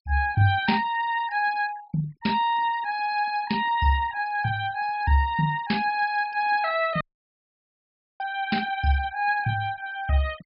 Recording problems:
low-pass filter; nothing above 5.5 kHz
noise reduction artefacts; signal-to-artefact ratio 20 dB
dropout; at 7 s for 1 s

